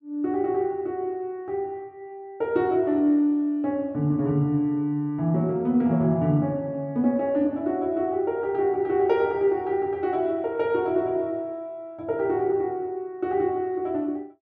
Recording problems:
none

